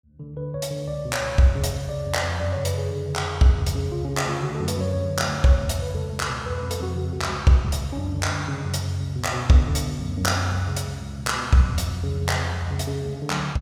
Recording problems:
none

